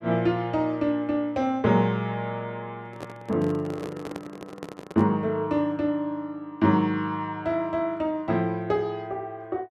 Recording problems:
handling noise; from 3 to 5 s; peak -6 dB vs average level

